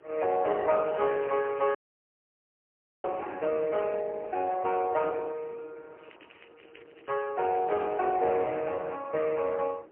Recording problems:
telephone audio; 300 Hz to 2.1 kHz, AMR-NB, then MP3
wind on the microphone; below 560 Hz, SNR 20 dB
crackling; from 0.5 to 3 s, from 6 to 7.5 s and at 7.5 s; loose cable, SNR 28 dB
audio cutting out; at 2 s for 1.5 s

